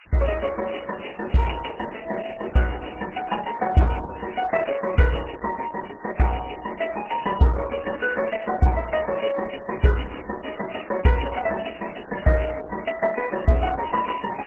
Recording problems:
lossy codec; MP3, then Opus, log-spectral distance 16 dB, nothing above 7.8 kHz
background hiss; SNR 20 dB

